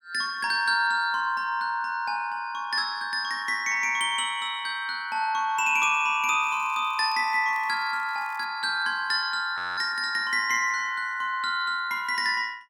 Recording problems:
crackling; from 6.5 to 8.5 s; loose cable, SNR 29 dB
audio freezing; at 9.5 s

